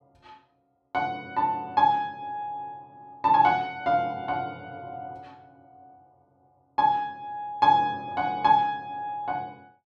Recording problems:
none

